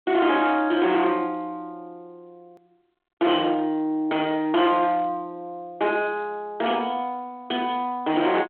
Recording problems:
phone line; 260 Hz to 3.3 kHz, G.726
distortion; hard clipping, uneven, signal-to-distortion ratio 11 dB
click at an edit; at 2.5 s

